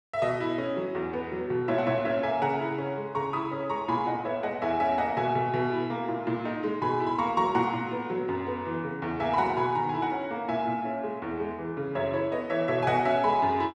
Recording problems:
none

